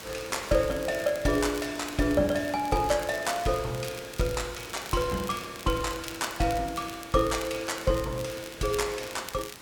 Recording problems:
hiss; slope -2 dB per octave, SNR 15 dB
crackle; vinyl, SNR 16 dB

